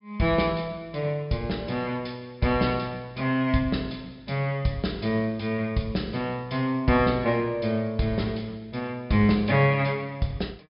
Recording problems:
treble cut off; nothing above 5.5 kHz

